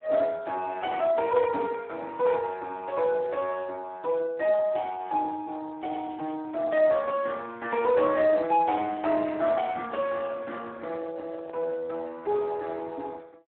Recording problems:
phone line; 240 Hz to 3.3 kHz, Speex
handling noise; from 8.5 to 12 s; peak -10 dB vs average level

